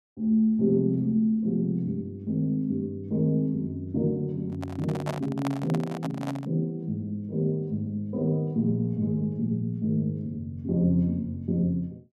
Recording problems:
microphone handling noise; from 4.5 to 6.5 s; peak -2 dB vs average level

